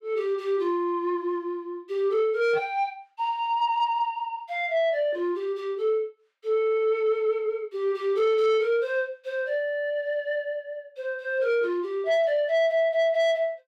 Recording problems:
distortion; soft clipping, signal-to-distortion ratio 12 dB

